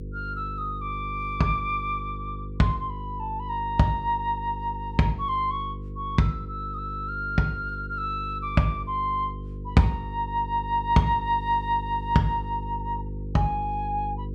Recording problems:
electrical hum; 50 Hz, harmonics up to 500 Hz, SNR 9 dB

